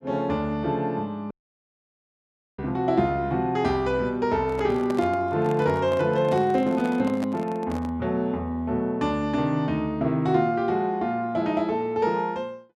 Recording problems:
dropout; at 1.5 s for 1.5 s
microphone handling noise; from 4.5 to 8 s; peak -5 dB vs average level

